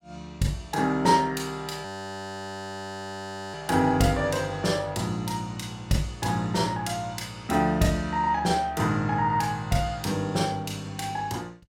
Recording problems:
frozen audio; at 2 s for 1.5 s

